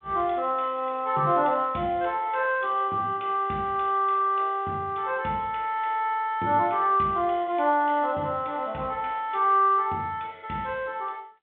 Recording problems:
phone line; 110 Hz to 3.7 kHz, G.726

